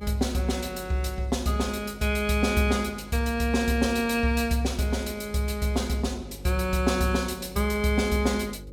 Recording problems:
hum; 50 Hz, harmonics up to 550 Hz, SNR 19 dB

